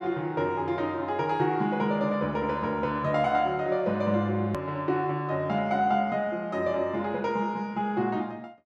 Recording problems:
edit click; at 4.5 s

